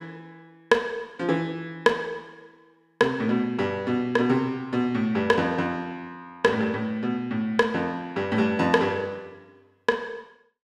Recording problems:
none

